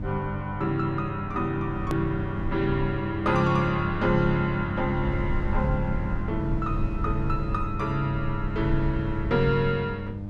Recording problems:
electrical hum; 50 Hz, harmonics up to 900 Hz, SNR 8 dB
low-frequency rumble; below 82 Hz, SNR 8 dB
click at an edit; at 2 s

